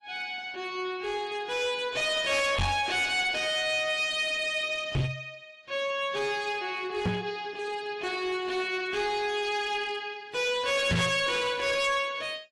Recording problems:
lossy compression; AAC, log-spectral distance 3 dB, nothing above 11.3 kHz
distortion; hard clipping, uneven, signal-to-distortion ratio 7 dB
microphone bump; 4 times, first at 2.5 s; peak +5 dB vs average level

